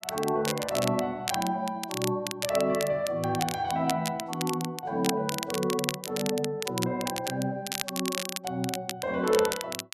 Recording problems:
crackling; vinyl, SNR 5 dB

